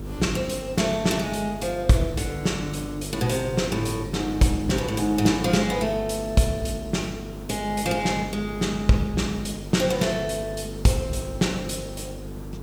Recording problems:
electrical hum; 50 Hz, harmonics up to 450 Hz, SNR 12 dB
hiss; SNR 19 dB

